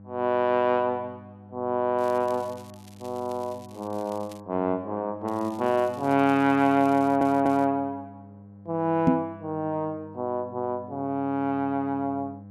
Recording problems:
mains hum; 50 Hz, harmonics up to 1 kHz, SNR 20 dB
crackle; from 2 to 4.5 s and from 5.5 to 7.5 s; loose cable, SNR 26 dB
audio stuttering; at 7 s
microphone thump; at 9 s; peak +8 dB vs average level

